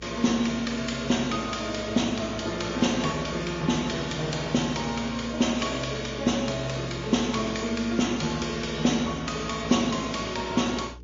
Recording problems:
lossy codec; Vorbis, then MP3, log-spectral distance 5 dB, nothing above 6.3 kHz
hum; 60 Hz, harmonics up to 480 Hz, SNR 18 dB

